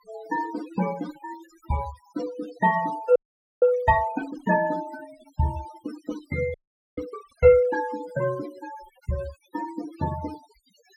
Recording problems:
noise reduction artefacts; signal-to-artefact ratio 15 dB
frozen audio; at 3 s and at 6.5 s

